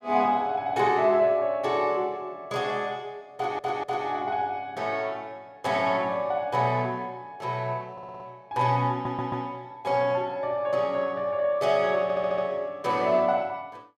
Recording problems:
audio stuttering; 4 times, first at 3.5 s

